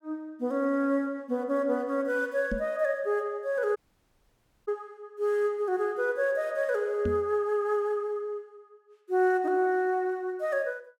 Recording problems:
microphone bump; at 2.5 s and at 7 s; peak -1 dB vs average level
dropout; at 4 s for 1 s

